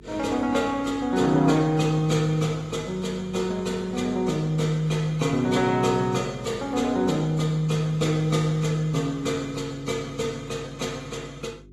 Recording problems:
lossy compression; AAC, log-spectral distance 3 dB, nothing above 12 kHz
electrical hum; 50 Hz, harmonics up to 400 Hz, SNR 24 dB

